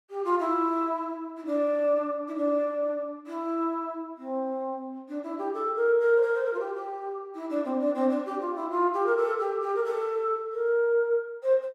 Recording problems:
none

